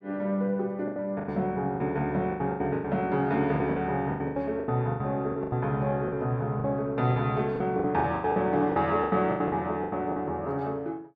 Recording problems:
lost packets; 15% of the sound replaced, filled with the last packet

